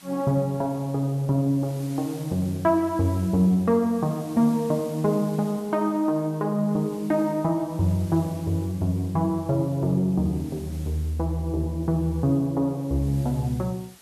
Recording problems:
background hiss; slope 0 dB per octave, SNR 23 dB

